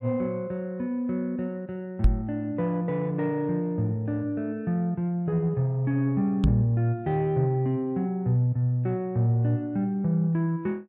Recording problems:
microphone bump; at 2 s and at 6.5 s; peak +9 dB vs average level

